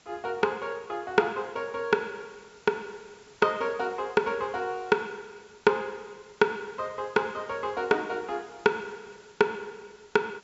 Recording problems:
treble missing; nothing above 8 kHz
hiss; slope -1 dB per octave, SNR 26 dB

